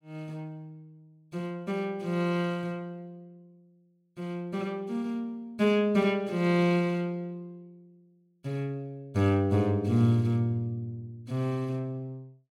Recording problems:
none

